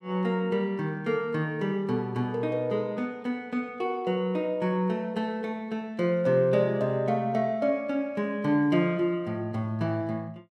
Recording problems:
none

